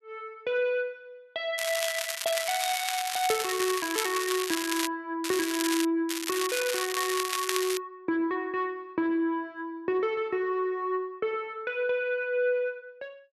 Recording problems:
crackling; from 1.5 to 5 s, at 5 s and from 6 to 8 s; loose cable, SNR 2 dB

